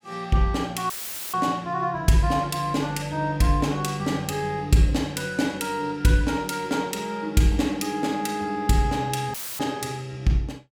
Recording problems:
dropout; at 1 s and at 9.5 s; filled with static

